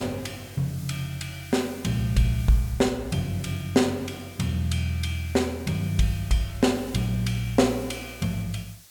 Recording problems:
hiss; slope +2 dB per octave, SNR 20 dB

